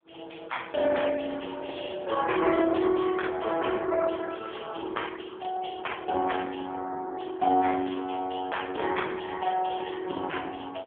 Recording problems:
phone line; 300 Hz to 3.3 kHz, AMR-NB

